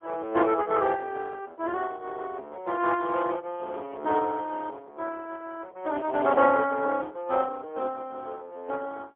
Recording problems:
telephone audio; 280 Hz to 3.4 kHz, AMR-NB, then MP3

